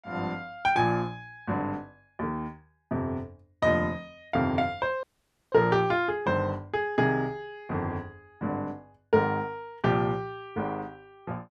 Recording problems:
audio cutting out; at 5 s

